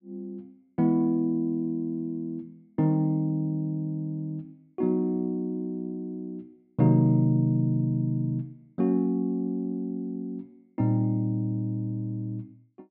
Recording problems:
none

